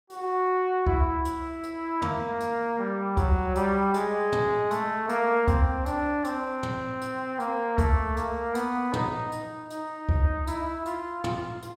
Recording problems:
none

